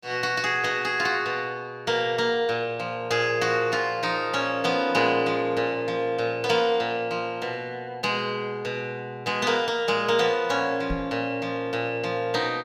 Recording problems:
microphone bump; at 11 s; peak -2 dB vs average level

